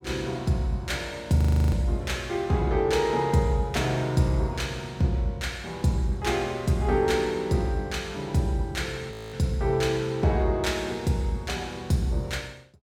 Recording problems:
audio freezing; at 1.5 s and at 9 s

